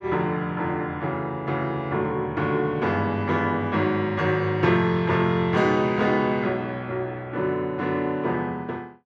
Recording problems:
none

